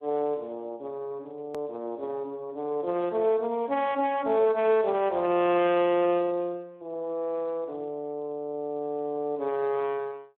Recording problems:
telephone audio; 240 Hz to 3.6 kHz, Speex
edit click; at 1.5 s

